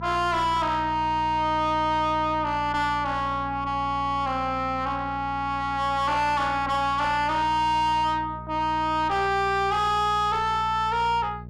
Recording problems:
distorted audio; soft clipping, signal-to-distortion ratio 5 dB
electrical hum; 60 Hz, harmonics up to 660 Hz, SNR 15 dB

